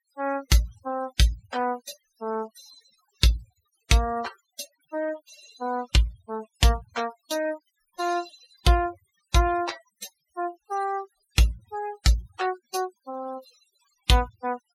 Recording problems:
denoising artefacts; signal-to-artefact ratio 16 dB

